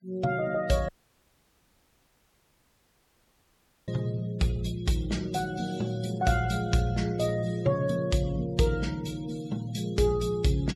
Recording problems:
denoising artefacts; signal-to-artefact ratio 21 dB
audio cutting out; at 1 s for 3 s

